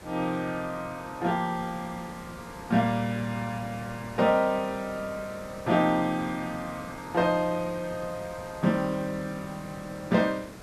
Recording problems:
background hiss; slope -5 dB per octave, SNR 15 dB

